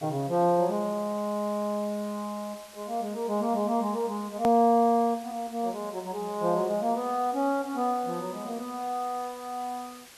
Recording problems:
hiss; slope 0 dB per octave, SNR 20 dB
edit click; at 4.5 s

